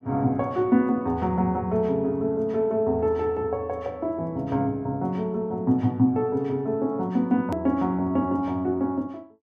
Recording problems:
edit click; at 7.5 s

